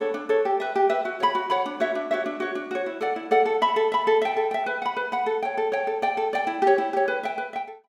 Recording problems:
none

